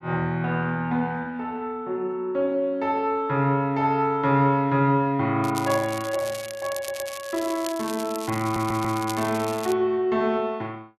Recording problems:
crackle; from 5.5 to 9.5 s; loose cable, SNR 13 dB
audio stuttering; at 7 s and at 8.5 s

